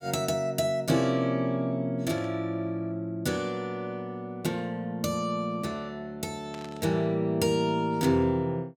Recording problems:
burst of static; at 2 s and at 6.5 s; peak -11 dB vs average level

